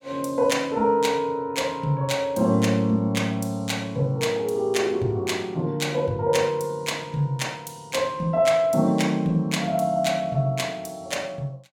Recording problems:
none

